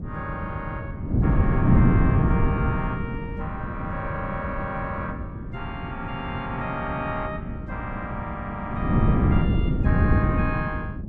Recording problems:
wind on the microphone; below 210 Hz, SNR -6 dB

